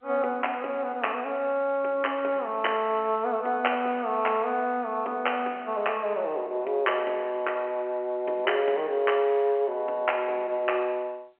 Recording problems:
telephone audio; 300 Hz to 3.1 kHz, G.711

